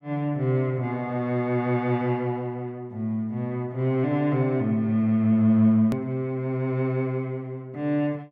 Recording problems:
click at an edit; at 6 s

